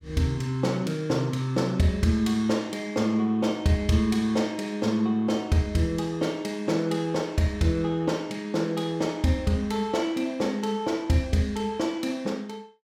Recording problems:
none

